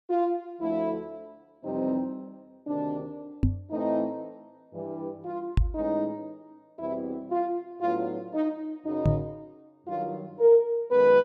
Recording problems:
microphone thump; at 3.5 s, at 5.5 s and at 9 s; peak +8 dB vs average level

